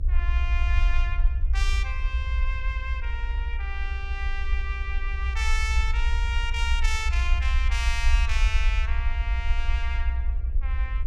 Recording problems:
hum; 60 Hz, harmonics up to 1.9 kHz, SNR 24 dB
low-frequency rumble; below 62 Hz, SNR -5 dB

